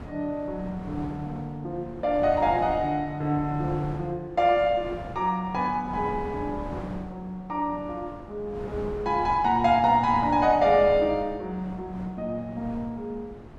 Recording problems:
wind noise; below 510 Hz, SNR 15 dB

